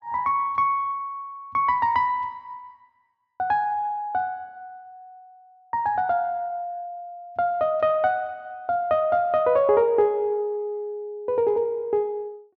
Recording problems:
none

